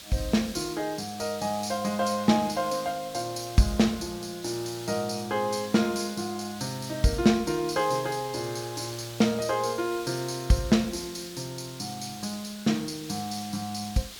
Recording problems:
hiss; SNR 14 dB

